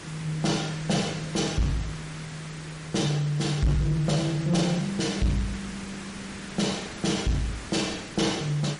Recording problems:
lossy compression; MP3, log-spectral distance 5 dB, nothing above 10.4 kHz
distorted audio; soft clipping, signal-to-distortion ratio 12 dB
background hiss; slope -3 dB per octave, SNR 12 dB

